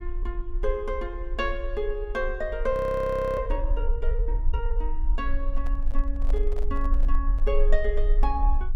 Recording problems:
low-frequency rumble; below 40 Hz, strongest tone 24 Hz, SNR -1 dB
audio freezing; at 2.5 s for 0.5 s
handling noise; from 5.5 to 7.5 s; peak -7 dB vs average level

